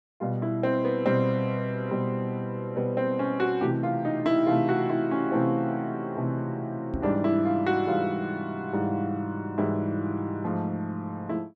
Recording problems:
microphone thump; at 7 s; peak -2 dB vs average level

